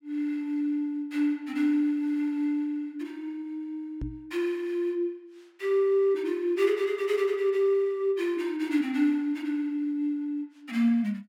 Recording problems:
microphone bump; at 4 s; peak -2 dB vs average level

